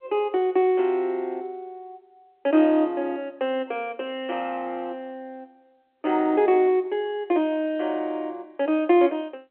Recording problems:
telephone audio; 280 Hz to 3.3 kHz, G.711

